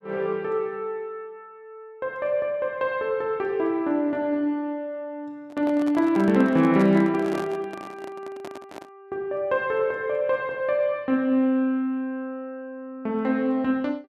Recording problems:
microphone handling noise; from 5.5 to 9 s; peak -5 dB vs average level

